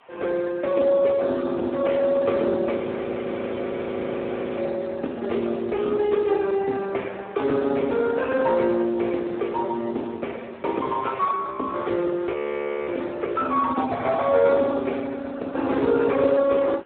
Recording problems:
phone line; 220 Hz to 3.6 kHz, Speex
hiss; SNR 28 dB
audio freezing; at 3 s for 2 s and at 12 s for 0.5 s

